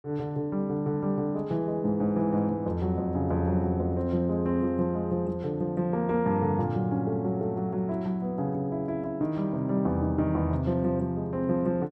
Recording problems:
none

